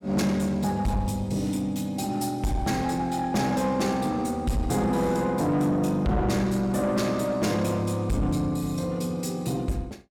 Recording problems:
distorted audio; soft clipping, signal-to-distortion ratio 10 dB

